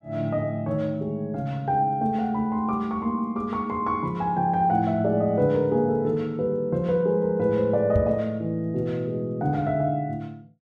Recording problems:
knock on the microphone; at 8 s; peak +3 dB vs average level

